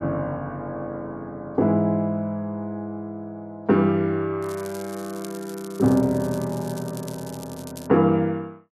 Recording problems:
crackling; from 4.5 to 8 s; loose cable, SNR 18 dB

